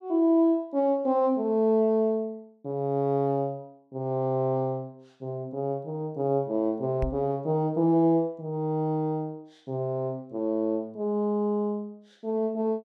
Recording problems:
microphone bump; at 7 s; peak -1 dB vs average level

